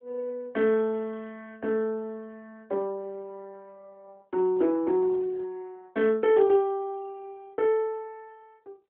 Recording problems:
phone line; 240 Hz to 3.2 kHz, AMR-NB

